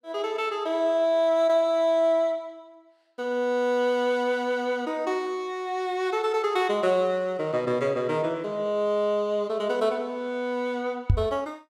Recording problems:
microphone thump; at 11 s; peak +7 dB vs average level

